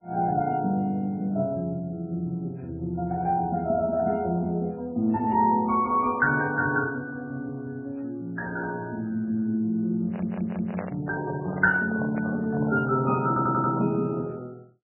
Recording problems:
codec artefacts; MP3, log-spectral distance 2 dB, nothing above 2.4 kHz
stutter; at 10 s and at 13 s
microphone handling noise; from 10 to 14 s; peak -4 dB vs average level

